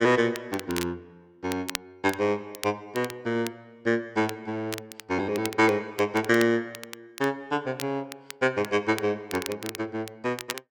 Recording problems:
crackle; vinyl, SNR 13 dB

